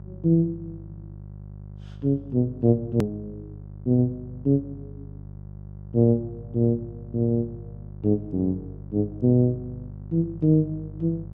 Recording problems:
electrical hum; 50 Hz, harmonics up to 600 Hz, SNR 16 dB
hard cut with a click; at 3 s

